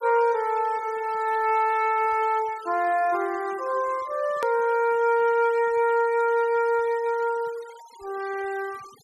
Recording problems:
noise reduction artefacts; signal-to-artefact ratio 23 dB
click at an edit; at 4.5 s

